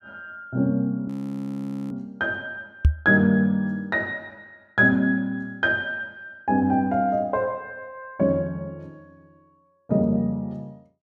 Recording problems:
audio freezing; at 1 s for 1 s
microphone bump; at 3 s; peak +9 dB vs average level

